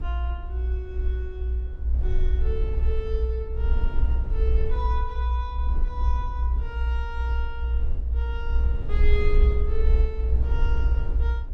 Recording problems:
low-frequency rumble; below 62 Hz, SNR -10 dB

